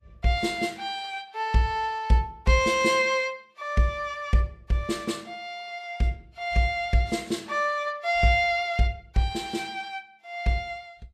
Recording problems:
codec artefacts; Vorbis, log-spectral distance 2 dB, nothing above 13.1 kHz

